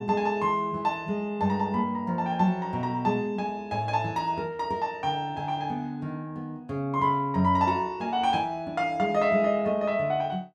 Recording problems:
none

